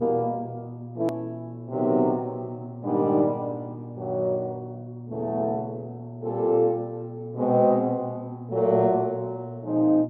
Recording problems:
electrical hum; 60 Hz, harmonics up to 600 Hz, SNR 13 dB
edit click; at 1 s

